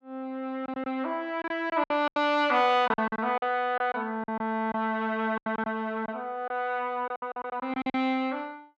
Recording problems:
lost packets; 11% of the sound replaced, filled with silence

